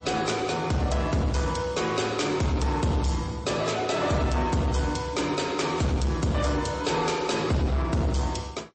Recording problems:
lossy codec; MP3, then MP3, log-spectral distance 4 dB, nothing above 8.2 kHz
distorted audio; soft clipping, signal-to-distortion ratio 10 dB

